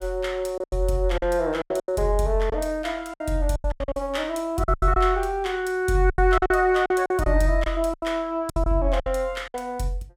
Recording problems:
packet loss; 13% of the sound replaced, filled with silence

